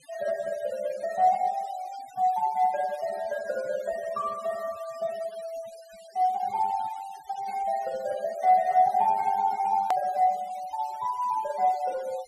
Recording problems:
noise reduction artefacts; signal-to-artefact ratio 21 dB
hard cut with a click; at 10 s

